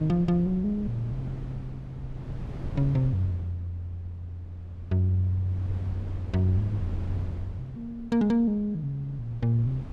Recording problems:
wind on the microphone; below 180 Hz, SNR 12 dB

